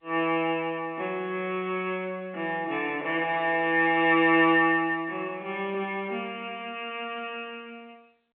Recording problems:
phone line; 240 Hz to 3.3 kHz, G.711

